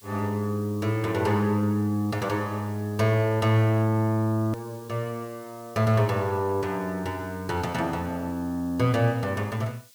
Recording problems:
background hiss; SNR 25 dB
click at an edit; at 4.5 s

